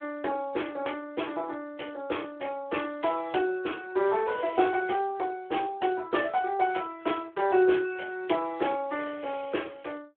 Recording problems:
phone line; 280 Hz to 3.4 kHz, Speex

